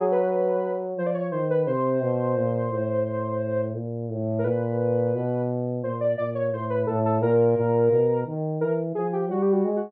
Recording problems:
none

